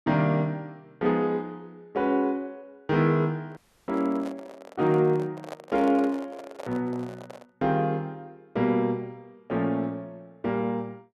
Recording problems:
microphone handling noise; from 3.5 to 7.5 s; peak -7 dB vs average level
dropout; at 3.5 s

